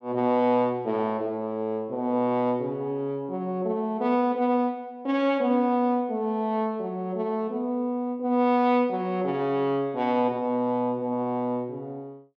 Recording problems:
none

